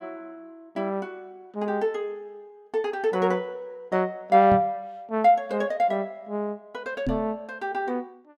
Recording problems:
microphone thump; at 4.5 s and at 7 s; peak +1 dB vs average level

